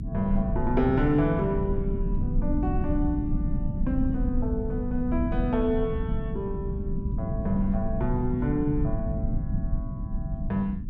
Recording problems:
hum; 50 Hz, harmonics up to 300 Hz, SNR 16 dB
low-frequency rumble; below 150 Hz, SNR 2 dB

